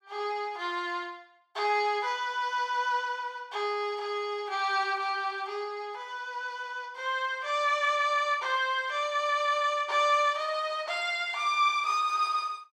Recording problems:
none

